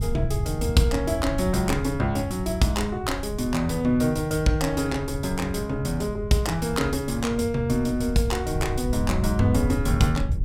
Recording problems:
wind on the microphone; below 110 Hz, SNR 7 dB

